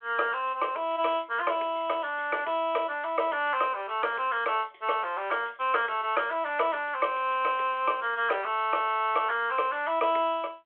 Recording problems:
telephone audio; 340 Hz to 3.3 kHz, G.726

